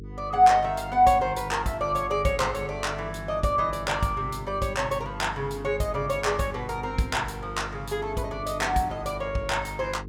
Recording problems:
hum; 50 Hz, harmonics up to 450 Hz, SNR 13 dB

